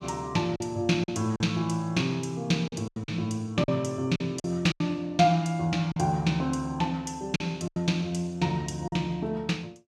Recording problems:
packet loss; 7% of the sound replaced, filled with silence

